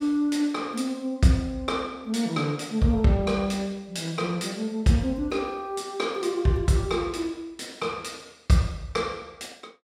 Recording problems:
none

